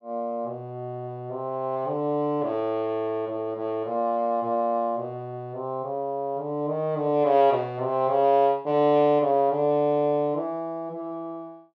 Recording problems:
none

